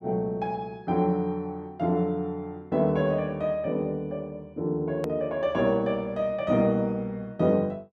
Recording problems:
edit click; at 5 s

